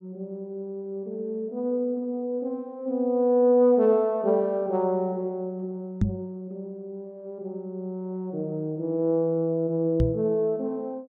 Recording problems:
microphone thump; at 6 s and at 10 s; peak +6 dB vs average level

